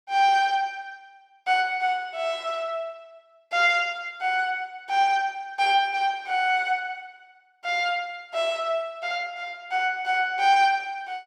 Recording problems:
none

